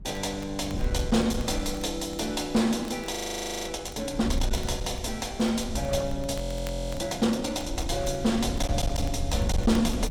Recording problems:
distortion; hard clipping, uneven, signal-to-distortion ratio 11 dB
wind on the microphone; below 90 Hz, SNR 6 dB
crackling; vinyl, SNR 24 dB
frozen audio; at 3 s for 0.5 s and at 6.5 s for 0.5 s

